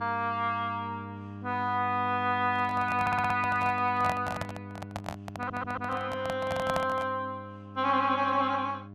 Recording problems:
hum; 50 Hz, harmonics up to 1 kHz, SNR 14 dB
handling noise; from 2.5 to 7 s; peak +1 dB vs average level
stutter; at 3 s and at 5.5 s

